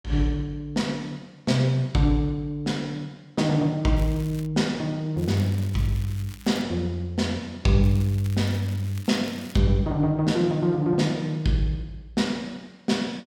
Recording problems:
crackle; at 4 s, from 5 to 6.5 s and from 8 to 9.5 s; loose cable, SNR 21 dB

